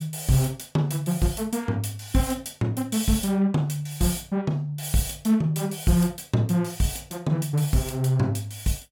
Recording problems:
none

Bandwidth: 16.5 kHz